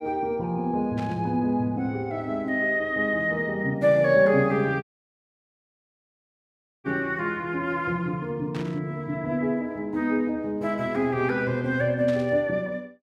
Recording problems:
static burst; at 1 s, at 8.5 s and at 12 s; peak -11 dB vs average level
dropout; at 5 s for 2 s

